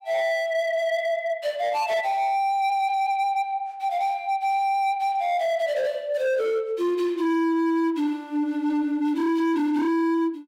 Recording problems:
distorted audio; hard clipping, signal-to-distortion ratio 11 dB

